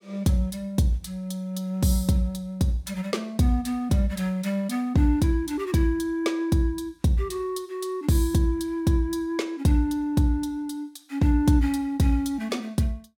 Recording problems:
none

